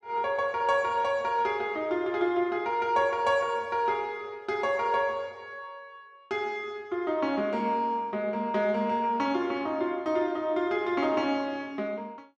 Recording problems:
none

